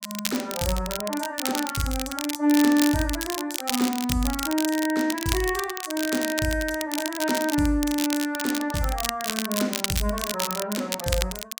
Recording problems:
crackling; vinyl, SNR 4 dB

